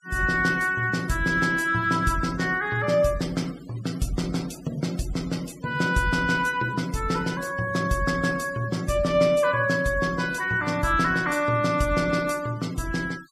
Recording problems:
denoising artefacts; signal-to-artefact ratio 21 dB

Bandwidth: 15.5 kHz